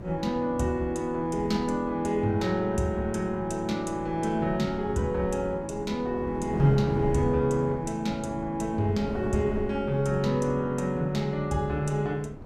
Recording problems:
wind on the microphone; below 320 Hz, SNR 12 dB

